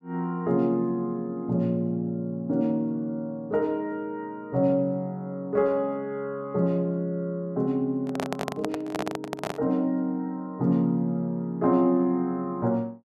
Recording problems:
microphone handling noise; from 8 to 9.5 s; peak 0 dB vs average level

